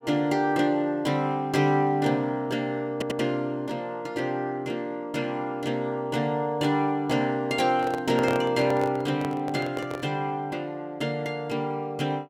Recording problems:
stutter; at 3 s
microphone handling noise; from 8 to 10 s; peak 0 dB vs average level

